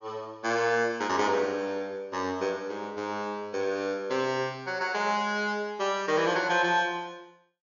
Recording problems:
low-pass filter; nothing above 6.8 kHz

